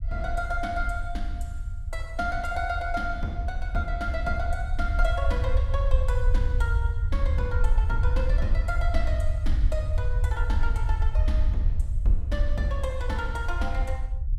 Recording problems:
low-frequency rumble; below 68 Hz, SNR -5 dB

